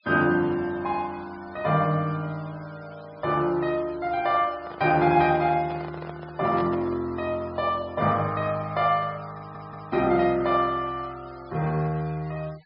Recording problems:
treble cut off; nothing above 5.5 kHz
denoising artefacts; signal-to-artefact ratio 25 dB
handling noise; from 4.5 to 7 s; peak -8 dB vs average level
stutter; at 9.5 s

